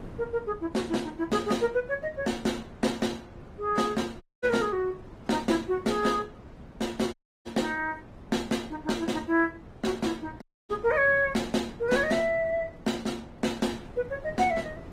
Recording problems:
lossy compression; AAC, then Opus, log-spectral distance 3 dB
wind noise; below 430 Hz, SNR 19 dB
audio cutting out; at 4 s, at 7 s and at 10 s

